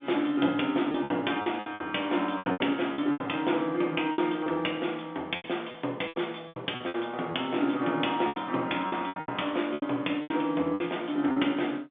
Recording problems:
phone line; 220 Hz to 3.6 kHz, G.711
packet loss; 13% of the sound replaced, filled with repeated pitch periods

